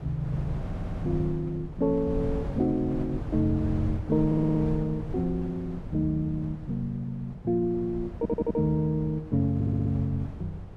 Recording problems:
wind on the microphone; below 170 Hz, SNR 9 dB
audio stuttering; 4 times, first at 0.5 s

